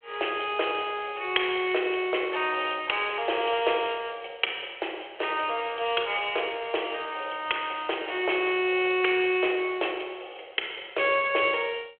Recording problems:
telephone audio; 320 Hz to 3.3 kHz, G.726

